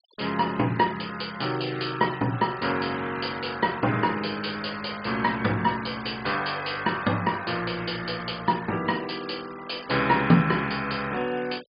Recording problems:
low-pass filter; nothing above 4.9 kHz
noise reduction artefacts; signal-to-artefact ratio 18 dB

